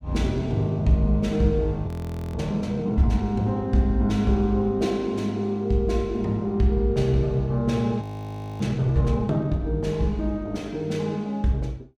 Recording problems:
audio freezing; at 2 s and at 8 s for 0.5 s

